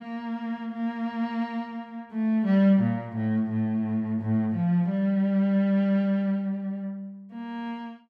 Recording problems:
none

